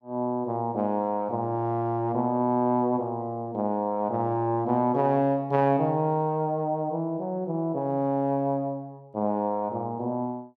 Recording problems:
none

